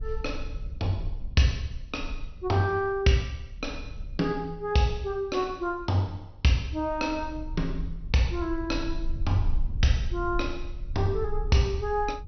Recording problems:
low-pass filter; nothing above 5.9 kHz
rumble; below 56 Hz, SNR 9 dB

